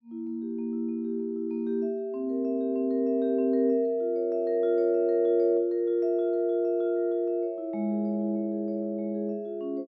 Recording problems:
none

